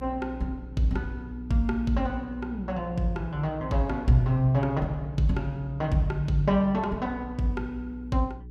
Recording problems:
electrical hum; 60 Hz, harmonics up to 420 Hz, SNR 13 dB

